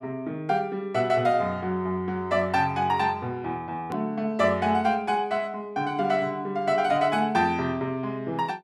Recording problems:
click at an edit; at 4 s

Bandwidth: 13.5 kHz